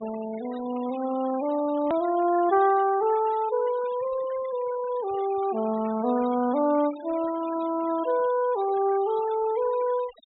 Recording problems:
treble missing; nothing above 3.9 kHz
noise reduction artefacts; signal-to-artefact ratio 20 dB
hard cut with a click; at 2 s

